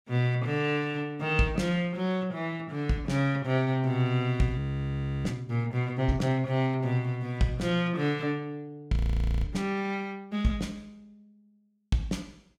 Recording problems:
frozen audio; at 4.5 s for 0.5 s and at 9 s

